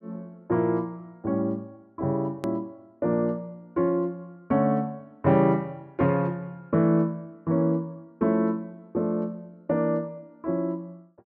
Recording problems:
edit click; at 2.5 s

